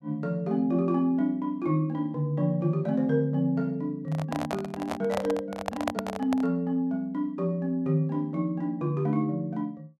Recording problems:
microphone handling noise; from 4 to 6.5 s; peak +3 dB vs average level

